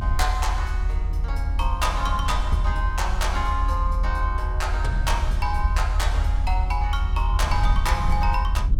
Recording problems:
low-frequency rumble; below 72 Hz, strongest tone 42 Hz, SNR -2 dB

